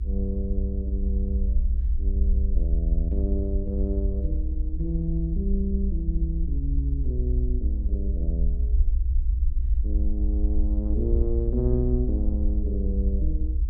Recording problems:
hum; 60 Hz, harmonics up to 360 Hz, SNR 19 dB
low-frequency rumble; below 62 Hz, SNR -6 dB

